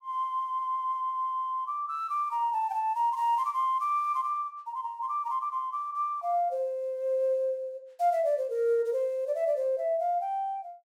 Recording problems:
none

